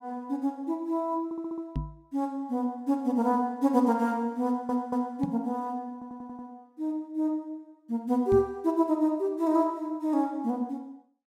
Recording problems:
stutter; at 1.5 s, at 4.5 s and at 6 s
microphone thump; at 2 s, at 5 s and at 8.5 s; peak +2 dB vs average level

